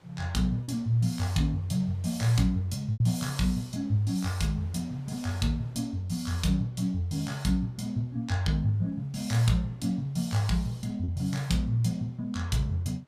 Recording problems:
wind on the microphone; below 2 kHz, SNR 32 dB
packet loss; 1.2% of the sound replaced, filled with repeated pitch periods

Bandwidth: 15 kHz